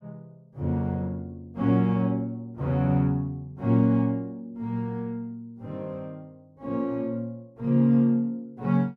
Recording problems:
none

